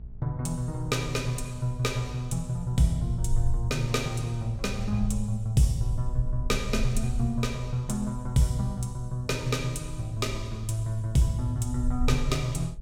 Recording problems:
electrical hum; 60 Hz, harmonics up to 660 Hz, SNR 24 dB
wind on the microphone; below 56 Hz, SNR 9 dB

